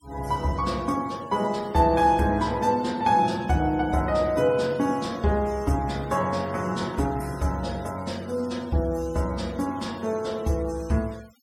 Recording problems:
noise reduction artefacts; signal-to-artefact ratio 23 dB

